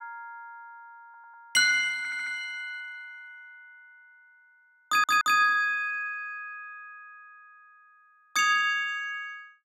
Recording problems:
audio stuttering; at 1 s, at 2 s and at 5 s

